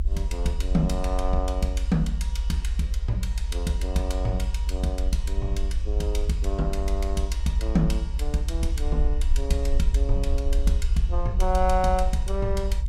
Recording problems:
rumble; below 60 Hz, SNR -2 dB

